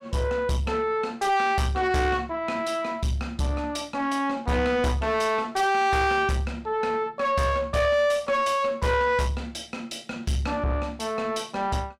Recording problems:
distorted audio; soft clipping, signal-to-distortion ratio 6 dB

